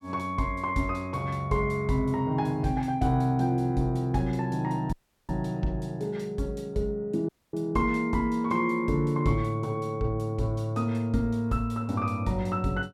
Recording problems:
audio cutting out; at 5 s and at 7.5 s

